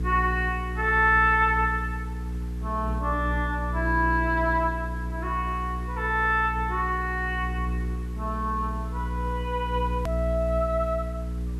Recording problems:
hum; 60 Hz, harmonics up to 480 Hz, SNR 5 dB
hiss; SNR 27 dB
hard cut with a click; at 10 s

